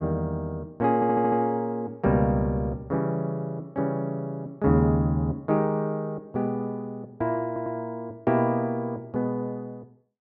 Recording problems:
stutter; at 1 s and at 7.5 s

